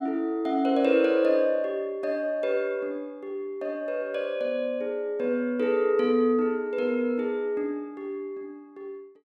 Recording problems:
none

